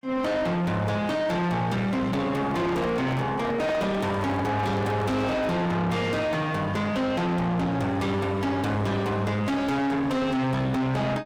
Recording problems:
distorted audio; soft clipping, signal-to-distortion ratio 5 dB
microphone handling noise; from 2.5 to 5.5 s; peak 0 dB vs average level

